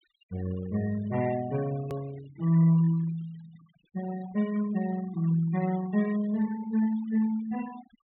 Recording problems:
low-pass filter; nothing above 4 kHz
noise reduction artefacts; signal-to-artefact ratio 19 dB
click at an edit; at 2 s

